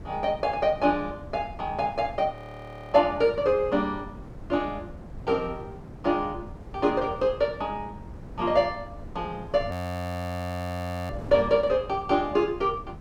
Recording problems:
wind noise; below 260 Hz, SNR 14 dB
audio freezing; at 2.5 s for 0.5 s and at 9.5 s for 1.5 s

